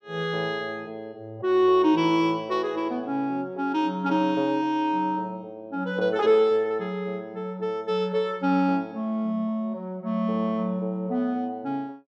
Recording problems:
none

